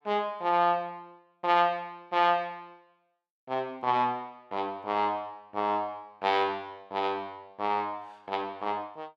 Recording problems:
none

